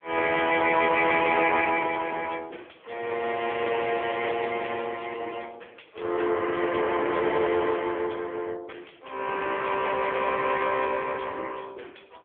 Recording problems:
telephone audio; 300 Hz to 3.3 kHz, AMR-NB

